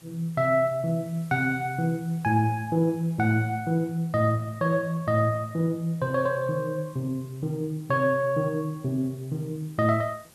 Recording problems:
background hiss; slope -2 dB per octave, SNR 26 dB

